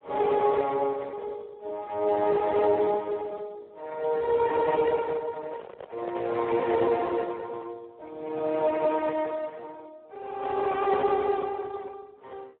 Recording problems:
phone line; 320 Hz to 2.1 kHz, Speex
microphone handling noise; from 5.5 to 7 s; peak -6 dB vs average level

